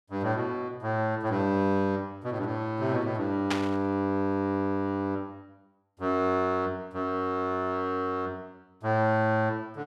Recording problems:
burst of static; at 3.5 s; peak +3 dB vs average level

